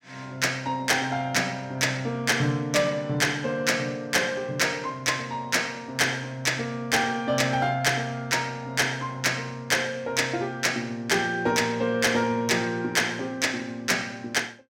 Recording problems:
distorted audio; hard clipping, signal-to-distortion ratio 12 dB

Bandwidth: 16.5 kHz